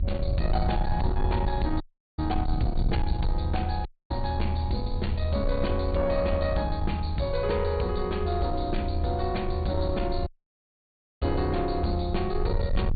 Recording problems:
treble missing; nothing above 4.6 kHz
distorted audio; soft clipping, signal-to-distortion ratio 10 dB
low-frequency rumble; below 80 Hz, SNR 2 dB
audio cutting out; at 2 s, at 4 s and at 10 s for 1 s

